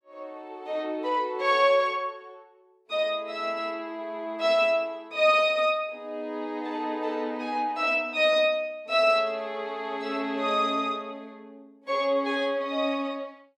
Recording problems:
none

